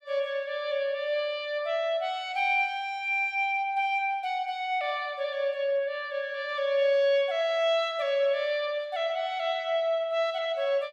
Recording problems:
none

